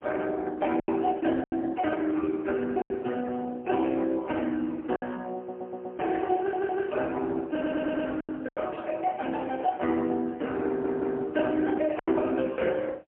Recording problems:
phone line; 190 Hz to 3.3 kHz, AMR-NB, then MP3
packet loss; 5% of the sound replaced, filled with silence
audio stuttering; 4 times, first at 5.5 s

